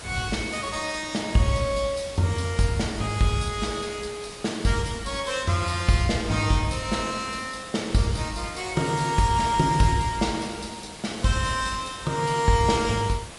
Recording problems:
lossy compression; MP3, log-spectral distance 6 dB, nothing above 11 kHz
background hiss; slope -3 dB per octave, SNR 14 dB

